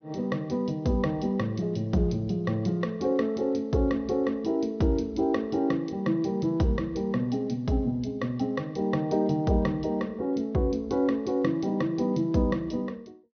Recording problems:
treble cut off; nothing above 6.2 kHz

